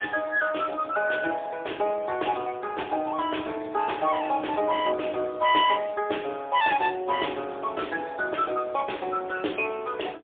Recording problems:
phone line; 260 Hz to 3.5 kHz, AMR-NB, then MP3

